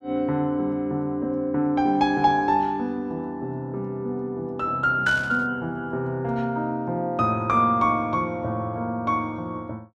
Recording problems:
static burst; at 5 s; peak -9 dB vs average level

